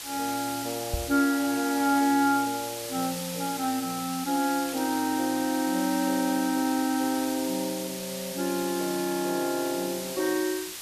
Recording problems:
hiss; slope +2 dB per octave, SNR 8 dB
microphone bump; at 1 s; peak 0 dB vs average level
crackling; at 4.5 s; loose cable, SNR 25 dB

